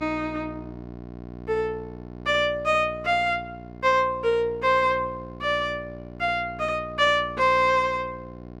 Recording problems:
hum; 60 Hz, harmonics up to 1.1 kHz, SNR 16 dB

